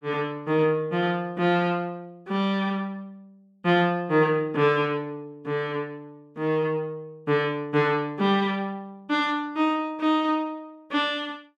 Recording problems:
none

